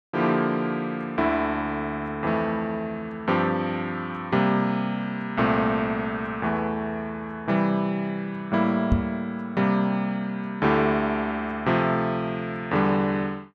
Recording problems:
knock on the microphone; at 9 s; peak +7 dB vs average level

